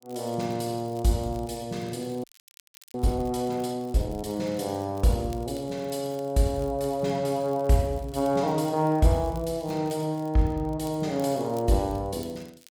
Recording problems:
crackle; vinyl, SNR 26 dB
audio freezing; at 2 s for 0.5 s

